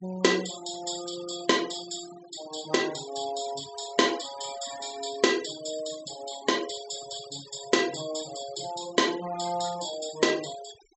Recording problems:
treble cut off; nothing above 7.9 kHz
denoising artefacts; signal-to-artefact ratio 13 dB

